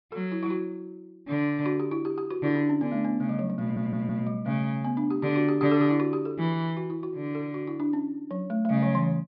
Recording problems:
treble missing; nothing above 5.5 kHz
stutter; at 3.5 s

